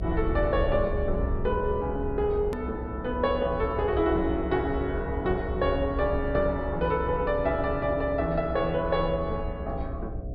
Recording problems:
treble missing; nothing above 5.1 kHz
electrical hum; 60 Hz, harmonics up to 720 Hz, SNR 13 dB
low-frequency rumble; below 84 Hz, SNR 8 dB
hard cut with a click; at 2.5 s

